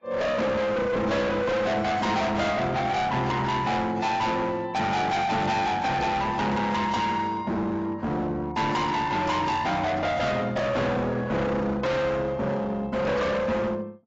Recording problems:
codec artefacts; AAC, log-spectral distance 2 dB, nothing above 7.3 kHz
distorted audio; hard clipping, signal-to-distortion ratio 6 dB

